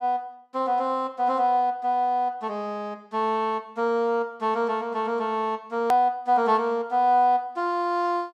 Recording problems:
click at an edit; at 6 s

